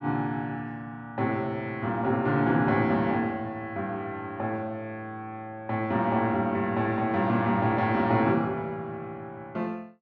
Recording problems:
none

